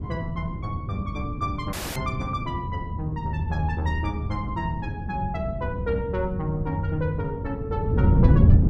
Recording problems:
wind noise; below 170 Hz, SNR -2 dB
audio cutting out; at 1.5 s

